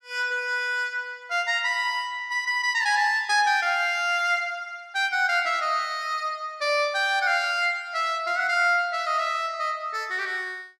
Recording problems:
none

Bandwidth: 14.5 kHz